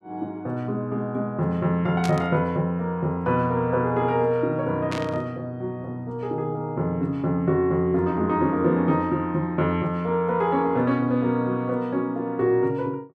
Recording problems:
static burst; at 2 s and at 5 s; peak -5 dB vs average level

